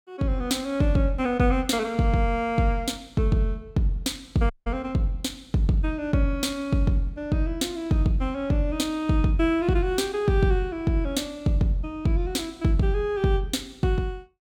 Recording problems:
dropout; at 4.5 s

